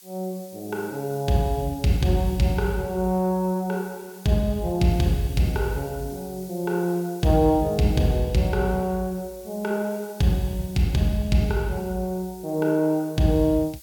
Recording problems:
background hiss; SNR 21 dB

